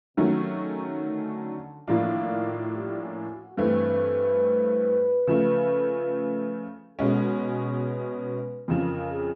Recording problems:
none

